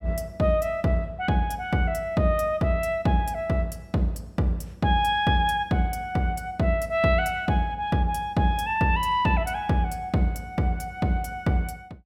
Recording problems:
none

